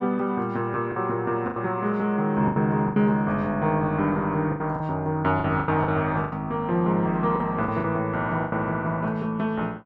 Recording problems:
packet loss; 9% of the sound replaced, filled with the last packet

